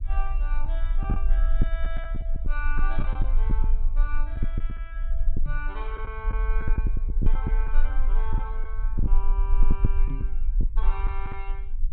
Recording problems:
treble cut off; nothing above 4 kHz
rumble; below 38 Hz, strongest tone 18 Hz, SNR -11 dB
lost packets; 5% of the sound replaced, filled with the last packet
microphone bump; at 5.5 s and at 10 s; peak +8 dB vs average level

